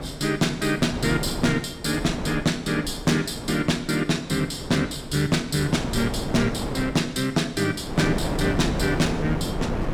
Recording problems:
distorted audio; hard clipping, uneven, signal-to-distortion ratio 11 dB
wind noise; below 550 Hz, SNR 7 dB

